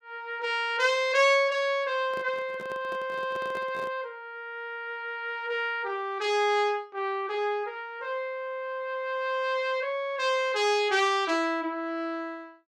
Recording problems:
microphone handling noise; from 2 to 4 s; peak -10 dB vs average level

